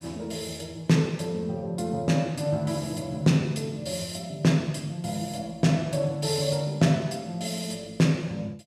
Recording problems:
none

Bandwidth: 14.5 kHz